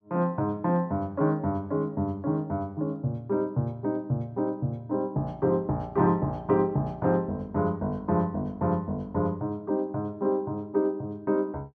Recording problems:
none

